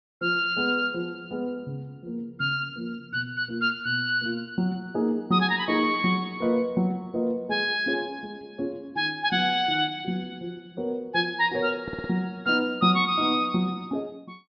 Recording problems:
low-pass filter; nothing above 5.5 kHz
stutter; at 12 s

